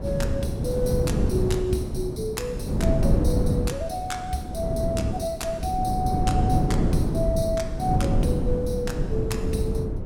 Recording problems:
wind noise; below 230 Hz, SNR -3 dB

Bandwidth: 17 kHz